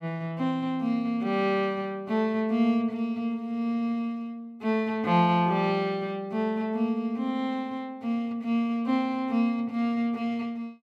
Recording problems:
none

